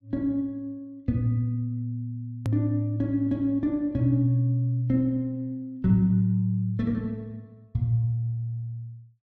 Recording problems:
click at an edit; at 2.5 s

